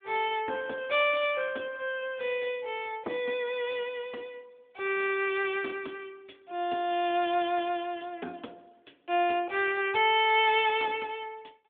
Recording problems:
phone line; 240 Hz to 3.5 kHz, AMR-NB

